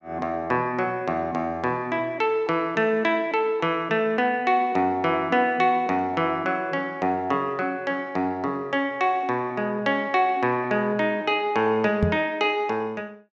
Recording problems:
microphone bump; at 12 s; peak +4 dB vs average level

